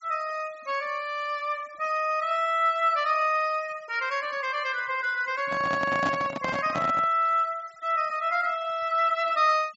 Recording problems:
low-pass filter; nothing above 8 kHz
denoising artefacts; signal-to-artefact ratio 25 dB
handling noise; from 5.5 to 7 s; peak +1 dB vs average level

